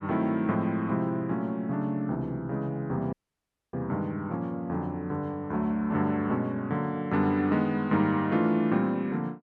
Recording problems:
dropout; at 3 s for 0.5 s

